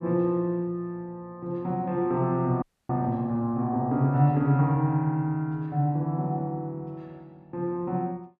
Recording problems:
frozen audio; at 2.5 s

